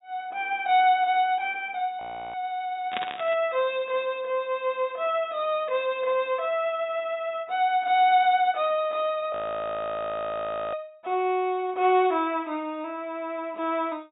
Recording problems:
treble cut off; nothing above 4 kHz
frozen audio; at 2 s and at 9.5 s for 1.5 s
burst of static; at 3 s; peak -1 dB vs average level

